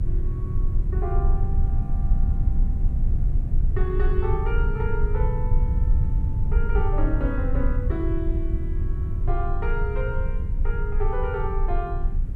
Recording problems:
hiss; SNR 23 dB
low-frequency rumble; below 70 Hz, strongest tone 26 Hz, SNR -6 dB

